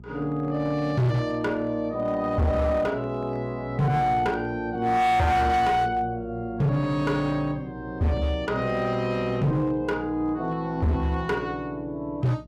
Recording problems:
distorted audio; hard clipping, signal-to-distortion ratio 8 dB
hum; 60 Hz, harmonics up to 420 Hz, SNR 18 dB

